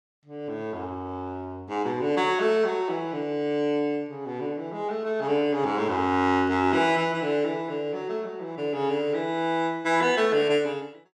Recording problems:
none

